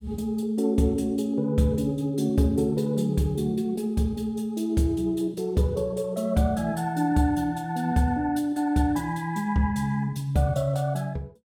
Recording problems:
none

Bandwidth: 17 kHz